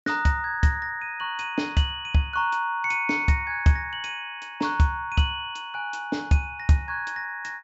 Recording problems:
treble missing; nothing above 8 kHz

